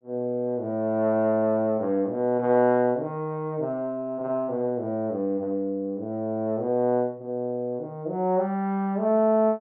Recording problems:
none

